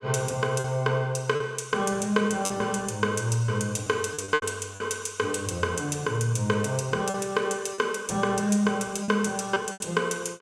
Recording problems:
lost packets; 6% of the sound replaced, filled with repeated pitch periods

